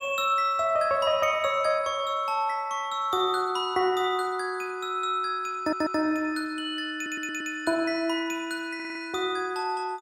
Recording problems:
audio stuttering; at 5.5 s, at 7 s and at 9 s

